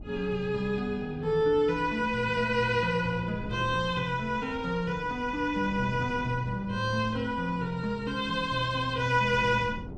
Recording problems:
wind on the microphone; below 260 Hz, SNR 15 dB

